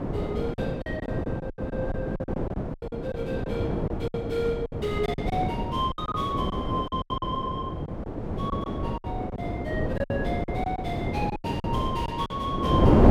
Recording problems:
wind on the microphone; below 460 Hz, SNR -2 dB
lost packets; 12% of the sound replaced, filled with silence

